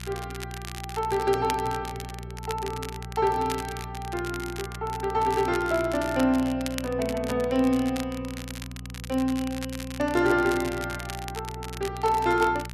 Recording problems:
hum; 60 Hz, harmonics up to 420 Hz, SNR 13 dB
crackling; vinyl, SNR 13 dB

